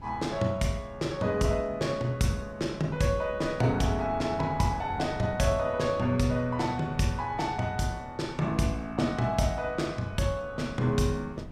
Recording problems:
wind on the microphone; below 250 Hz, SNR 18 dB

